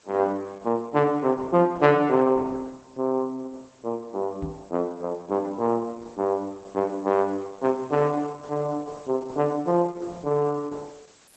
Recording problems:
codec artefacts; Opus, log-spectral distance 8 dB
hiss; slope -2 dB per octave, SNR 30 dB
knock on the microphone; at 4.5 s; peak -4 dB vs average level

